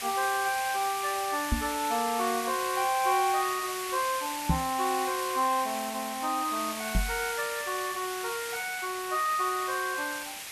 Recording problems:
hiss; SNR 6 dB
microphone thump; at 1.5 s, at 4.5 s and at 7 s; peak +7 dB vs average level

